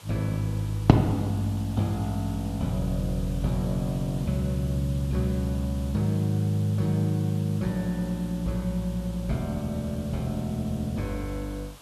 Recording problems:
background hiss; SNR 20 dB

